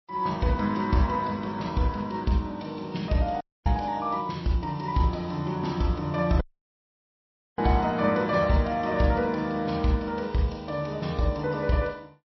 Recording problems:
codec artefacts; MP3, log-spectral distance 3 dB, nothing above 5.7 kHz
dropout; at 3.5 s and at 6.5 s for 1 s

